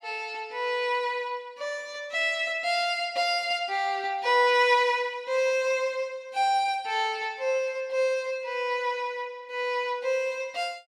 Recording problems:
none

